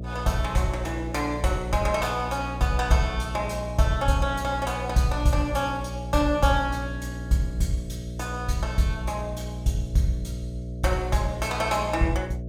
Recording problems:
hum; 60 Hz, harmonics up to 660 Hz, SNR 8 dB

